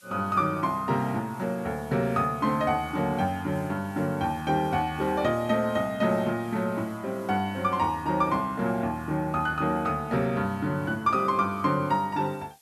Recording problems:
background hiss; slope +3 dB per octave, SNR 27 dB

